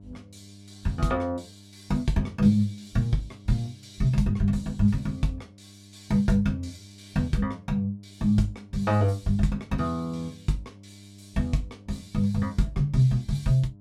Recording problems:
hum; 50 Hz, harmonics up to 700 Hz, SNR 23 dB

